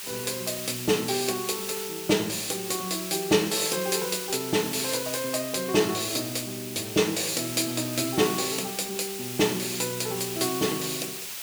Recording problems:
background hiss; slope +3 dB per octave, SNR 6 dB

